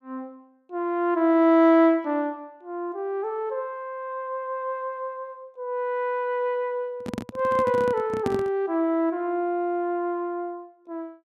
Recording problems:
microphone handling noise; from 7 to 8.5 s; peak 0 dB vs average level

